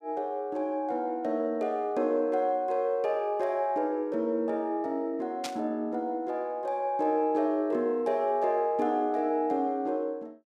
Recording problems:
static burst; at 5.5 s; peak -2 dB vs average level

